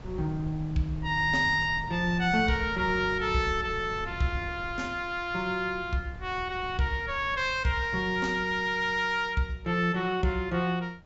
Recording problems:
low-pass filter; nothing above 8 kHz
wind on the microphone; below 160 Hz, SNR 15 dB

